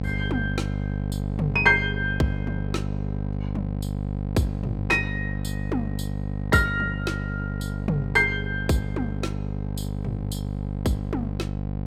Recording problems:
mains hum; 50 Hz, harmonics up to 800 Hz, SNR 3 dB

